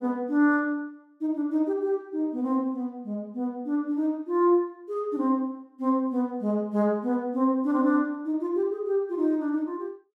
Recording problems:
none

